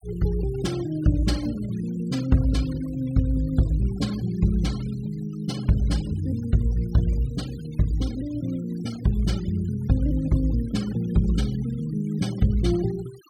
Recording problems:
noise reduction artefacts; signal-to-artefact ratio 20 dB

